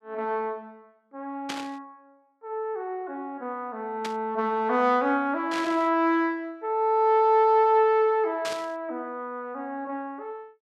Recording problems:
burst of static; 4 times, first at 1.5 s; peak -4 dB vs average level

